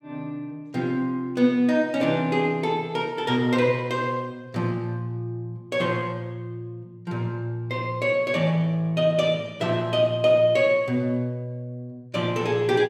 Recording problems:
none

